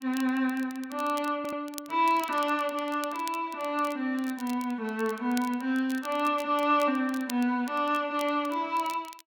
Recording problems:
crackle; vinyl, SNR 18 dB
stutter; at 1.5 s

